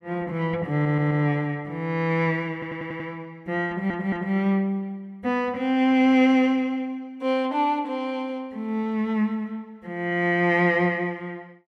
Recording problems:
stutter; at 0.5 s, at 2.5 s and at 3.5 s

